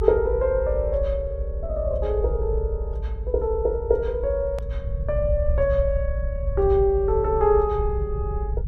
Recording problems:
rumble; below 66 Hz, strongest tone 50 Hz, SNR 4 dB
hard cut with a click; at 4.5 s

